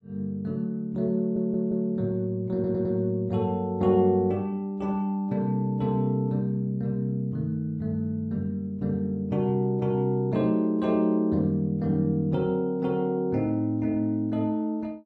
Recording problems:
stutter; at 1 s and at 2.5 s

